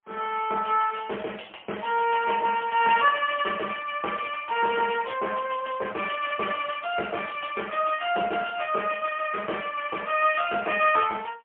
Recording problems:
telephone audio; 260 Hz to 3.2 kHz, AMR-NB, then MP3

